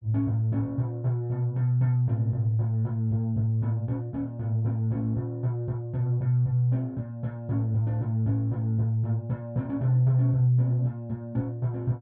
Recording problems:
none

